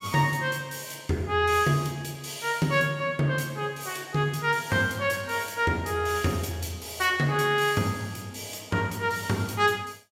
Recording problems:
none

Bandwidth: 16 kHz